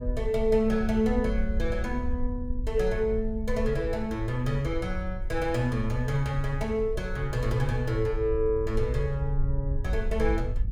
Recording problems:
low-frequency rumble; below 60 Hz, SNR 6 dB

